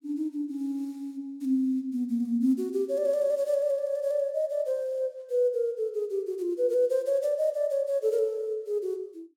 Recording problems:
none

